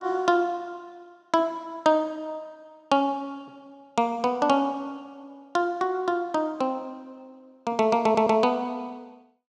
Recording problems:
stutter; at 8 s

